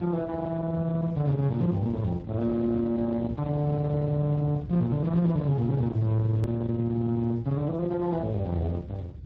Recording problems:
codec artefacts; Speex, log-spectral distance 2 dB, nothing above 13.1 kHz
distorted audio; soft clipping, signal-to-distortion ratio 11 dB
low-frequency rumble; below 240 Hz, SNR 12 dB
hard cut with a click; at 6.5 s

